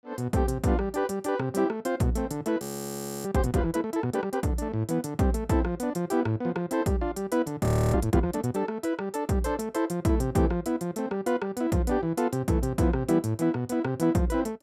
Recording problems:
audio freezing; at 2.5 s for 0.5 s and at 7.5 s

